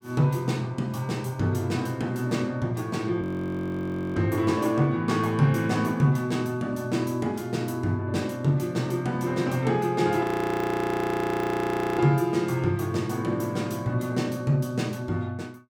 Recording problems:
frozen audio; at 3 s for 1 s and at 10 s for 1.5 s

